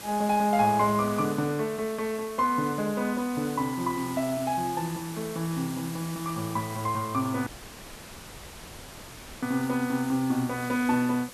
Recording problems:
background hiss; slope -2 dB per octave, SNR 14 dB
dropout; at 7.5 s for 2 s

